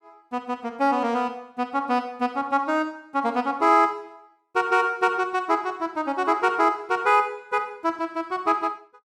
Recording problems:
none

